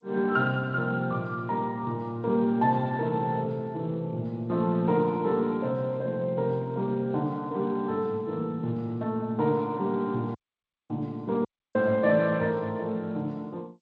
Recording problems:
lossy compression; Speex, then G.722, log-spectral distance 2 dB
audio cutting out; at 10 s for 0.5 s and at 11 s

